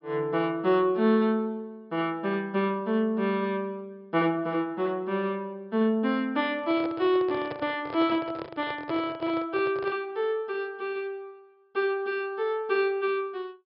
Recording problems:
low-pass filter; nothing above 5.5 kHz
microphone handling noise; from 6.5 to 10 s; peak -5 dB vs average level

